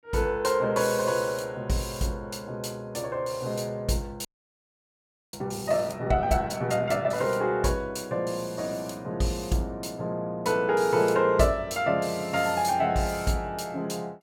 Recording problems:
audio freezing; at 4.5 s for 1 s

